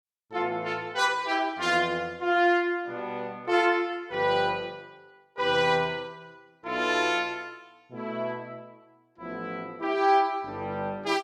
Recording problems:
none

